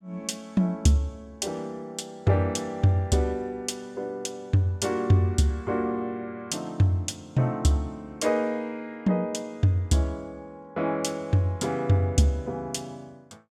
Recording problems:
none

